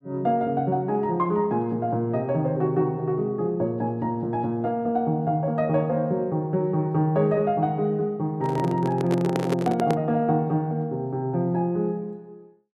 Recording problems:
microphone handling noise; from 8.5 to 10 s; peak +3 dB vs average level

